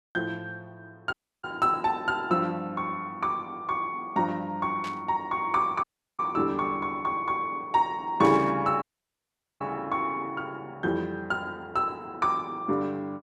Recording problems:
audio cutting out; at 1 s, at 6 s and at 9 s for 1 s
burst of static; at 5 s and at 8 s; peak -9 dB vs average level

